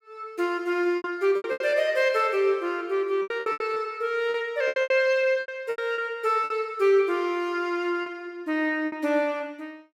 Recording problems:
lost packets; 11% of the sound replaced, filled with repeated pitch periods

